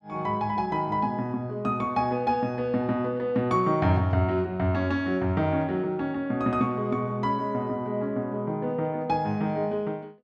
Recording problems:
none

